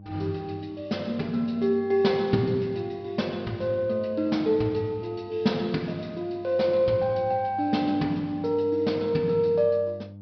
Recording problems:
treble missing; nothing above 5.5 kHz
electrical hum; 50 Hz, harmonics up to 600 Hz, SNR 20 dB

